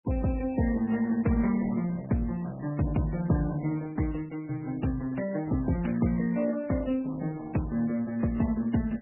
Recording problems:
lossy codec; Opus, then MP3, log-spectral distance 3 dB, nothing above 2.8 kHz

